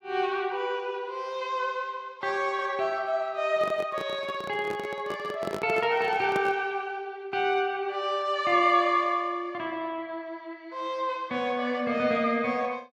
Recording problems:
microphone handling noise; from 3.5 to 6.5 s; peak -1 dB vs average level

